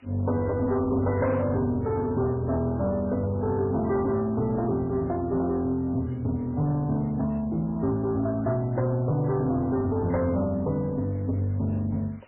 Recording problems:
lossy codec; MP3, log-spectral distance 4 dB
distorted audio; soft clipping, signal-to-distortion ratio 11 dB
background hiss; SNR 29 dB

